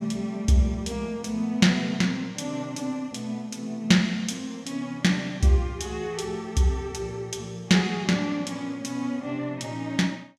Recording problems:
none

